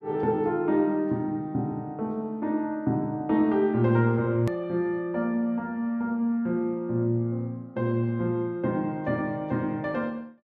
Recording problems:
hard cut with a click; at 4.5 s

